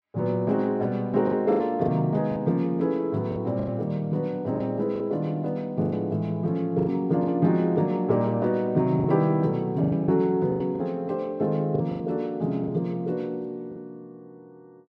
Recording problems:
lost packets; 8% of the sound replaced, filled with the last packet

